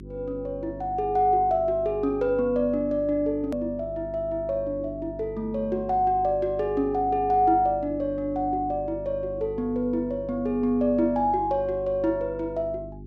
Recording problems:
mains hum; 50 Hz, harmonics up to 400 Hz, SNR 15 dB
edit click; at 3.5 s

